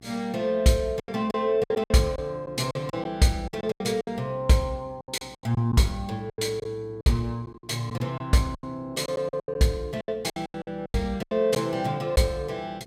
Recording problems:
electrical hum; 60 Hz, harmonics up to 1.1 kHz, SNR 25 dB
lost packets; 13% of the sound replaced, filled with silence

